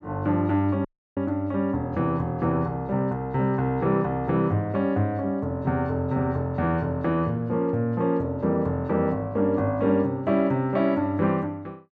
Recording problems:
dropout; at 1 s

